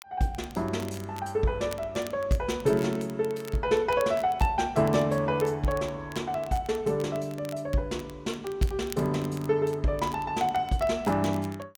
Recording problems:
crackling; vinyl, SNR 20 dB

